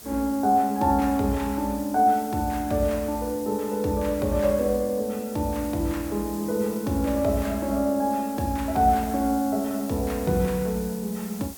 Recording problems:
background hiss; SNR 16 dB

